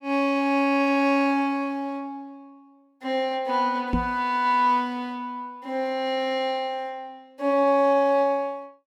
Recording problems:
knock on the microphone; at 4 s; peak +4 dB vs average level

